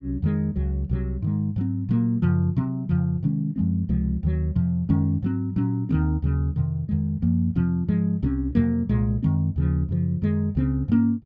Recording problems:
none

